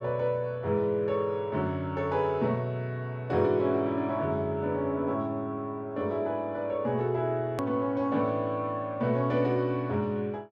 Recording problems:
hard cut with a click; at 7.5 s

